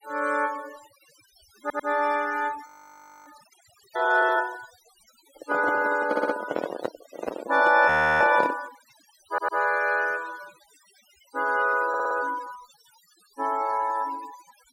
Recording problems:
denoising artefacts; signal-to-artefact ratio 19 dB
stutter; 4 times, first at 1.5 s
audio freezing; at 2.5 s for 0.5 s and at 8 s
microphone handling noise; from 5.5 to 8.5 s; peak 0 dB vs average level

